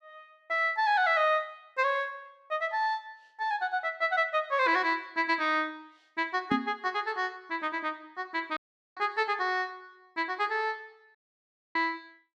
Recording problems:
microphone bump; at 6.5 s; peak +4 dB vs average level
dropout; at 8.5 s and at 11 s for 0.5 s

